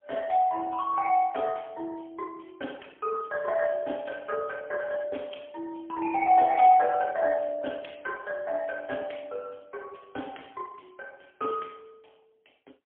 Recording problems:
phone line; 280 Hz to 3.3 kHz, AMR-NB, then MP3

